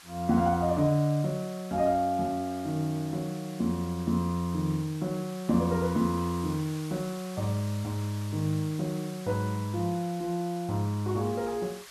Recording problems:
background hiss; SNR 17 dB

